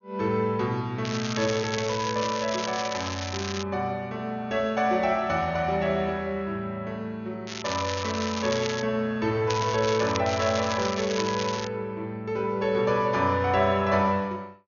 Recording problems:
treble cut off; nothing above 6.8 kHz
crackle; 4 times, first at 1 s; loose cable, SNR 8 dB

